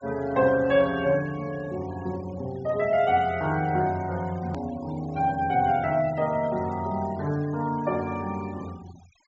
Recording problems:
low-pass filter; nothing above 7.6 kHz
denoising artefacts; signal-to-artefact ratio 22 dB
hard cut with a click; at 4.5 s

